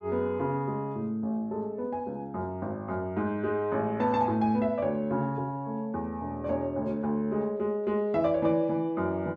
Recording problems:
none

